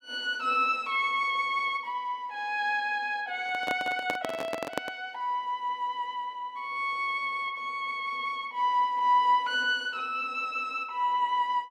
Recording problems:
microphone handling noise; from 3.5 to 5 s; peak +2 dB vs average level

